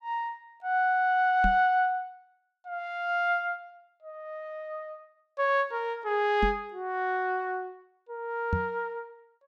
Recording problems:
knock on the microphone; at 1.5 s, at 6.5 s and at 8.5 s; peak +3 dB vs average level

